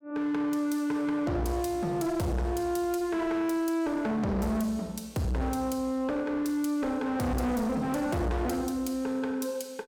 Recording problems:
distorted audio; hard clipping, signal-to-distortion ratio 8 dB

